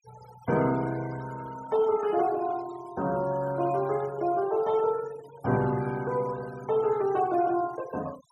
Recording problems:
noise reduction artefacts; signal-to-artefact ratio 19 dB

